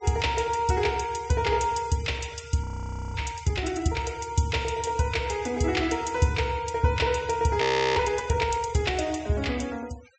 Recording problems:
treble cut off; nothing above 8 kHz
denoising artefacts; signal-to-artefact ratio 22 dB
audio freezing; at 2.5 s for 0.5 s and at 7.5 s

